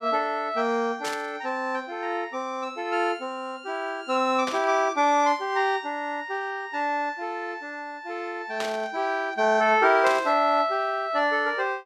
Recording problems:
static burst; 4 times, first at 1 s; peak -3 dB vs average level

